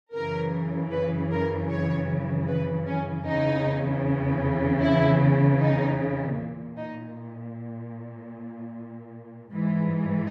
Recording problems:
none

